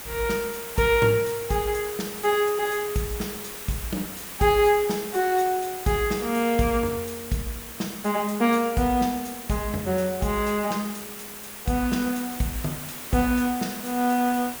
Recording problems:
background hiss; slope -2 dB per octave, SNR 10 dB

